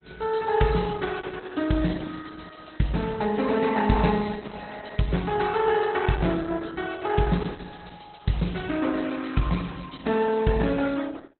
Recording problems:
lossy compression; Opus, log-spectral distance 7 dB, nothing above 4.1 kHz

